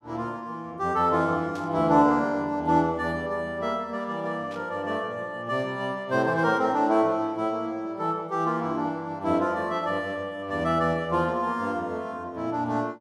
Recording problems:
static burst; at 1.5 s and at 4.5 s; peak -15 dB vs average level

